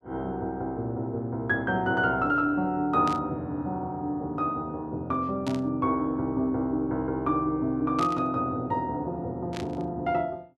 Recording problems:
burst of static; 4 times, first at 3 s; peak -6 dB vs average level

